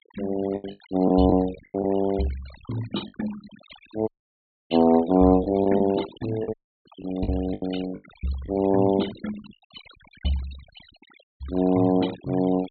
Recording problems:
treble cut off; nothing above 4.3 kHz
noise reduction artefacts; signal-to-artefact ratio 18 dB
lost packets; 7% of the sound replaced, filled with the last packet
dropout; at 4 s for 0.5 s, at 6.5 s and at 11 s

